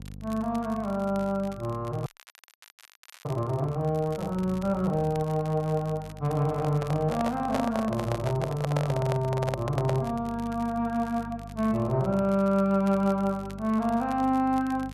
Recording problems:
electrical hum; 50 Hz, harmonics up to 550 Hz, SNR 16 dB
crackling; vinyl, SNR 24 dB
frozen audio; at 2 s for 1 s
handling noise; from 6.5 to 10 s; peak +1 dB vs average level

